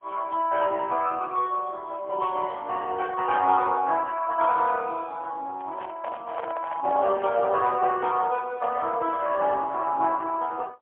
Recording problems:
phone line; 280 Hz to 2.3 kHz, AMR-NB, then MP3
microphone handling noise; from 5.5 to 7.5 s; peak -4 dB vs average level

